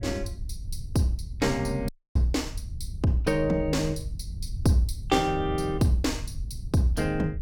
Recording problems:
rumble; below 90 Hz, SNR 10 dB
audio cutting out; at 2 s

